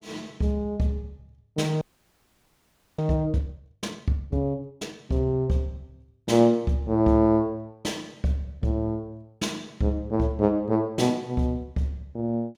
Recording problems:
frozen audio; at 2 s for 1 s

